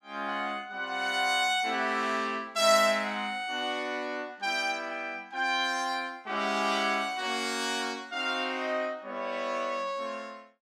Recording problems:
none

